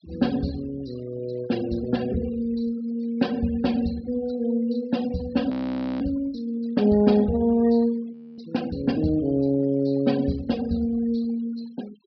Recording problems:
treble missing; nothing above 5.5 kHz
denoising artefacts; signal-to-artefact ratio 22 dB
audio freezing; at 5.5 s for 0.5 s and at 8 s

